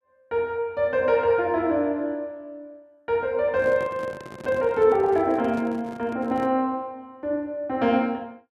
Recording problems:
handling noise; from 3.5 to 6.5 s; peak -11 dB vs average level

